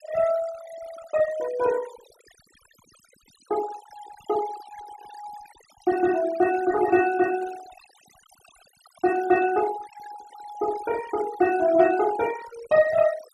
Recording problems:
denoising artefacts; signal-to-artefact ratio 16 dB

